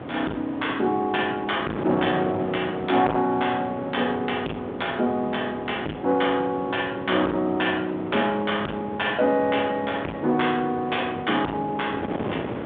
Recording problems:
telephone audio; 190 Hz to 3.6 kHz, G.726
distorted audio; soft clipping, signal-to-distortion ratio 9 dB
wind on the microphone; below 730 Hz, SNR 10 dB

